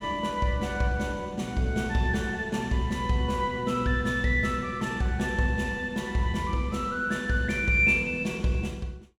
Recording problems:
none

